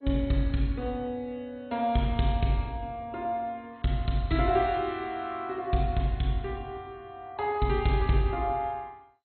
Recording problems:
lossy compression; MP2, log-spectral distance 2 dB, nothing above 4.2 kHz

